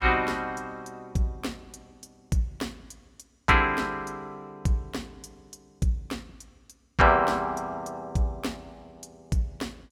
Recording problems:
none

